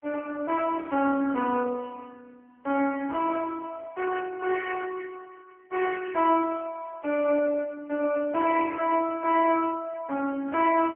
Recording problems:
phone line; 260 Hz to 2.3 kHz, AMR-NB

